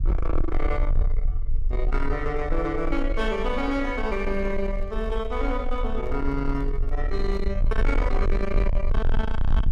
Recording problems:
distortion; soft clipping, signal-to-distortion ratio 7 dB
low-frequency rumble; below 44 Hz, strongest tone 24 Hz, SNR 1 dB
microphone handling noise; from 4 to 7.5 s; peak -11 dB vs average level

